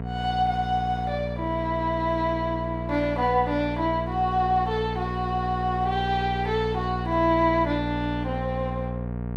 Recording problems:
hum; 60 Hz, harmonics up to 1.2 kHz, SNR 6 dB

